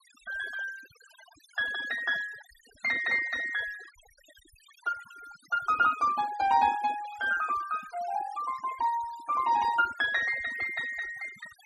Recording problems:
denoising artefacts; signal-to-artefact ratio 17 dB

